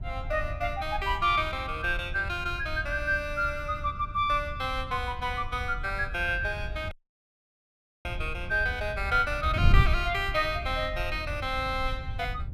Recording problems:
wind on the microphone; below 90 Hz, SNR 6 dB
audio cutting out; at 7 s for 1 s

